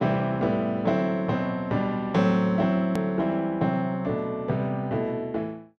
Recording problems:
edit click; at 3 s

